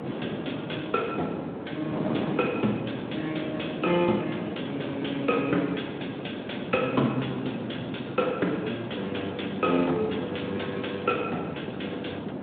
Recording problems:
phone line; 150 Hz to 3.6 kHz, Speex
wind on the microphone; below 530 Hz, SNR 4 dB

